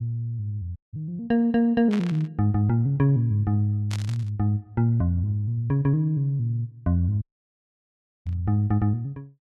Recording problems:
dropout; at 1 s and at 7 s for 1 s
static burst; at 2 s, at 4 s and at 8.5 s; peak -7 dB vs average level

